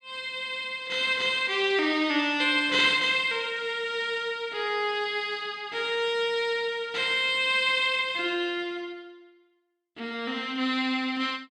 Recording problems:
none

